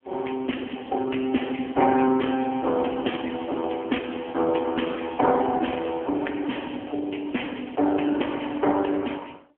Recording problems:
phone line; 220 Hz to 3.2 kHz, AMR-NB
crackle; at 2 s, from 3 to 4.5 s and at 6 s; loose cable, SNR 29 dB

